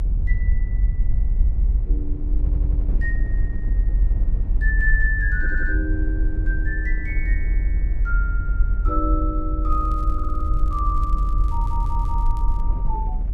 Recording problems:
low-frequency rumble; below 50 Hz, strongest tone 44 Hz, SNR -5 dB
wind on the microphone; below 150 Hz, SNR 8 dB
audio stuttering; 4 times, first at 2.5 s
crackling; from 9.5 to 13 s; loose cable, SNR 27 dB

